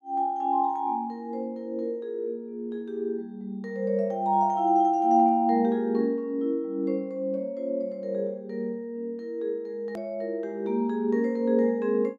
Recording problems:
hard cut with a click; at 10 s

